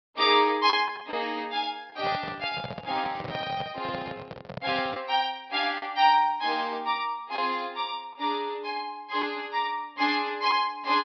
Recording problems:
low-pass filter; nothing above 5.5 kHz
packet loss; 2% of the sound replaced, filled with the last packet
microphone handling noise; from 2 to 5 s; peak -5 dB vs average level

